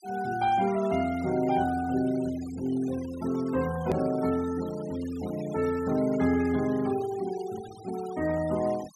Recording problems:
denoising artefacts; signal-to-artefact ratio 19 dB
click at an edit; at 4 s

